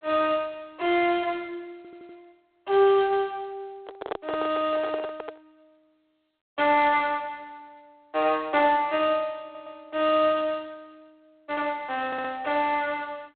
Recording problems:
phone line; 280 Hz to 3.5 kHz, G.726
audio stuttering; at 2 s, at 9.5 s and at 12 s
handling noise; from 4 to 5.5 s; peak -1 dB vs average level

